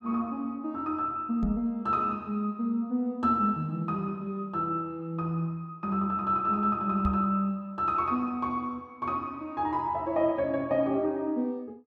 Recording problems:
microphone thump; at 1.5 s and at 7 s; peak +2 dB vs average level

